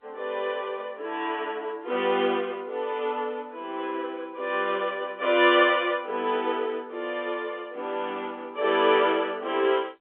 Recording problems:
telephone audio; 340 Hz to 3.5 kHz, G.711

